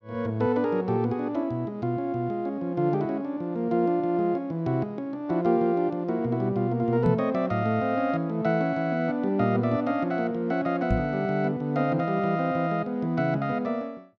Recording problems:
knock on the microphone; at 7 s and at 11 s; peak +5 dB vs average level

